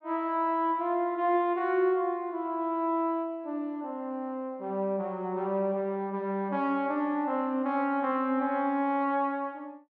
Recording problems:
none

